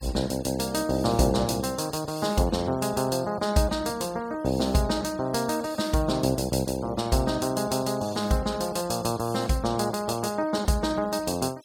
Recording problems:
denoising artefacts; signal-to-artefact ratio 22 dB

